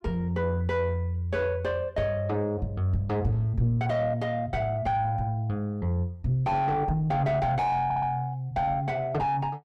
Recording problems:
distortion; soft clipping, signal-to-distortion ratio 6 dB
stutter; at 8 s

